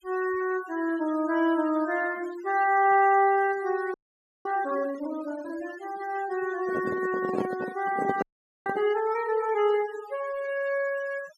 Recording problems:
denoising artefacts; signal-to-artefact ratio 17 dB
frozen audio; at 4 s for 0.5 s and at 8 s
handling noise; from 6.5 to 9 s; peak 0 dB vs average level

